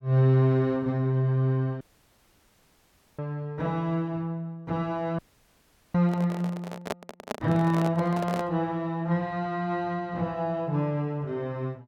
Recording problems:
dropout; at 2 s for 1.5 s and at 5 s for 1 s
handling noise; from 6 to 8.5 s; peak +1 dB vs average level

